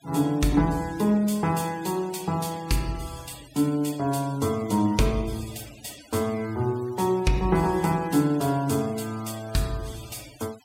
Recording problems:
denoising artefacts; signal-to-artefact ratio 20 dB

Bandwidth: 16 kHz